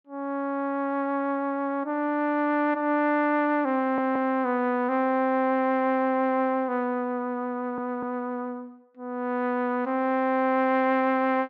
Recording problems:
audio stuttering; at 4 s and at 7.5 s

